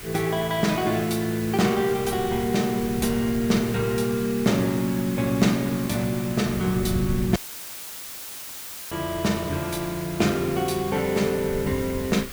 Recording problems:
hiss; SNR 13 dB
wind on the microphone; below 170 Hz, SNR 15 dB
dropout; at 7.5 s for 1.5 s; filled with static

